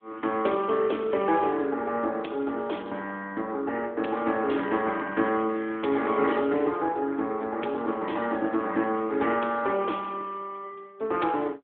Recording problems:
telephone audio; 240 Hz to 3.4 kHz, AMR-NB

